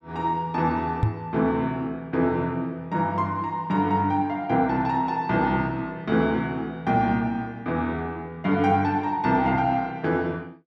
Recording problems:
knock on the microphone; at 1 s; peak +6 dB vs average level

